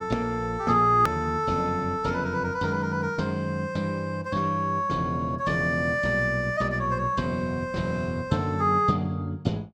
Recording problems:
click at an edit; at 1 s

